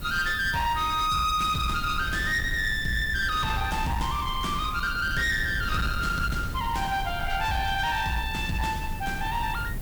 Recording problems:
distorted audio; hard clipping, signal-to-distortion ratio 11 dB
hiss; SNR 20 dB
rumble; below 120 Hz, SNR 9 dB

